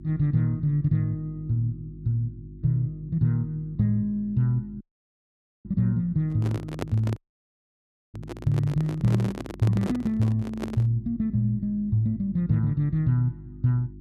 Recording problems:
hum; 50 Hz, harmonics up to 350 Hz, SNR 19 dB
audio cutting out; at 5 s for 1 s and at 7 s for 1 s
handling noise; from 6.5 to 11 s; peak -1 dB vs average level

